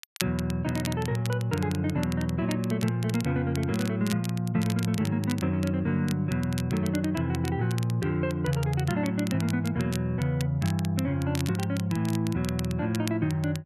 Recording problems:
crackle; vinyl, SNR 14 dB

